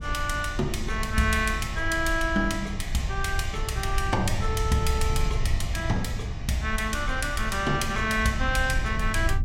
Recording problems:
rumble; below 86 Hz, SNR 5 dB

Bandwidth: 16 kHz